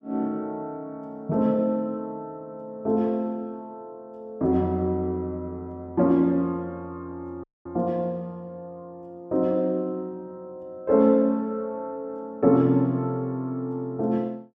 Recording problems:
dropout; at 7.5 s

